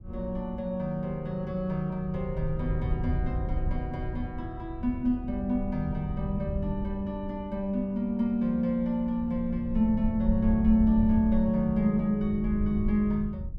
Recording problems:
wind noise; below 92 Hz, SNR 7 dB

